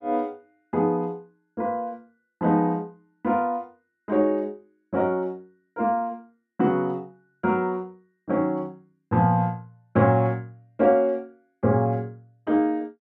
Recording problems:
none

